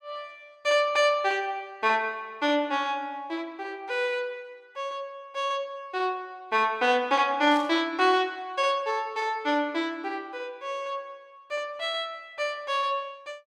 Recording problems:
burst of static; at 7.5 s; peak -11 dB vs average level

